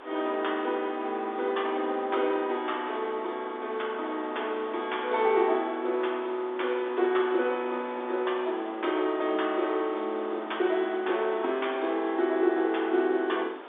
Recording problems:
telephone audio; 260 Hz to 3.6 kHz, G.711
hiss; SNR 15 dB

